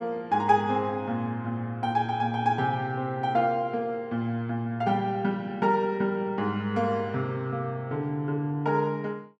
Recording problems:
none

